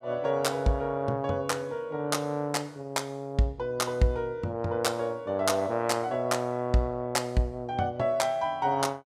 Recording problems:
none

